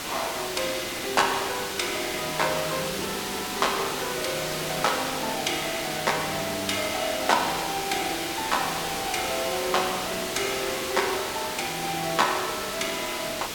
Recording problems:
hiss; slope -2 dB per octave, SNR 3 dB

